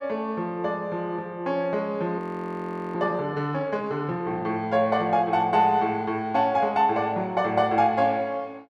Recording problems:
audio freezing; at 2 s for 1 s

